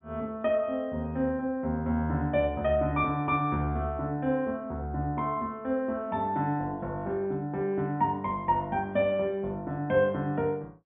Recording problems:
low-pass filter; nothing above 3.6 kHz

